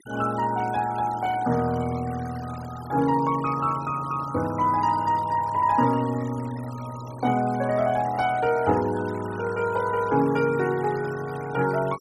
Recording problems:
noise reduction artefacts; signal-to-artefact ratio 18 dB

